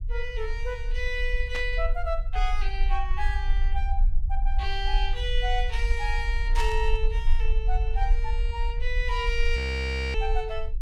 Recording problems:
rumble; below 44 Hz, strongest tone 20 Hz, SNR -2 dB
static burst; at 1.5 s and at 6.5 s; peak 0 dB vs average level
frozen audio; at 9.5 s for 0.5 s

